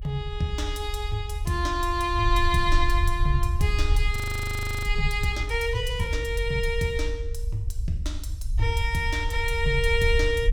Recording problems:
low-frequency rumble; below 74 Hz, SNR 3 dB
audio freezing; at 4 s for 0.5 s

